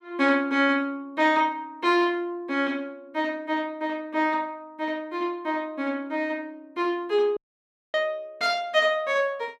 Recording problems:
dropout; at 7.5 s for 0.5 s

